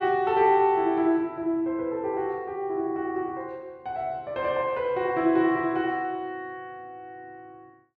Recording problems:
none

